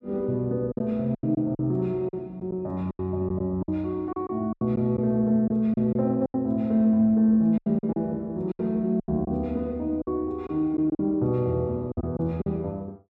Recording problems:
packet loss; 10% of the sound replaced, filled with silence

